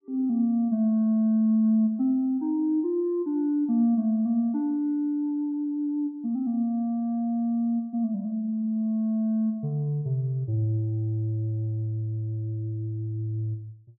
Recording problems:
none

